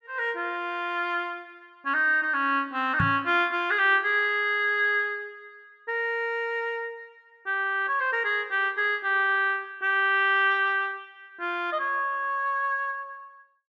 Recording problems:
microphone thump; at 3 s; peak +1 dB vs average level

